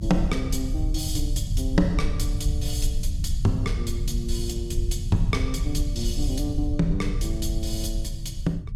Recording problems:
rumble; below 84 Hz, SNR 0 dB

